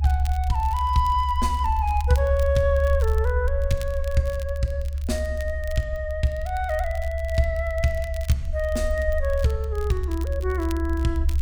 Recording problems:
rumble; below 72 Hz, strongest tone 70 Hz, SNR 1 dB
crackling; vinyl, SNR 21 dB

